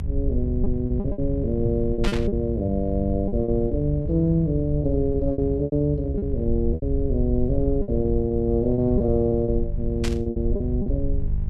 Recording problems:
electrical hum; 50 Hz, harmonics up to 600 Hz, SNR 9 dB
rumble; below 76 Hz, SNR 6 dB
lost packets; 11% of the sound replaced, filled with repeated pitch periods
burst of static; at 2 s and at 10 s; peak -2 dB vs average level

